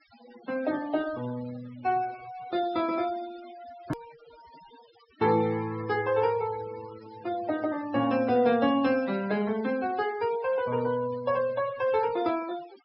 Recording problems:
low-pass filter; nothing above 5.4 kHz
noise reduction artefacts; signal-to-artefact ratio 18 dB
hard cut with a click; at 4 s

